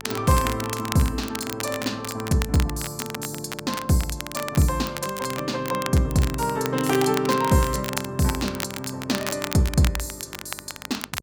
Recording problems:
hum; 50 Hz, harmonics up to 1 kHz, SNR 24 dB
crackling; vinyl, SNR 9 dB

